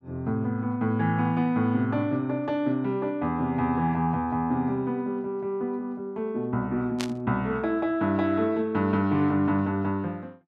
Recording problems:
static burst; at 7 s; peak -2 dB vs average level

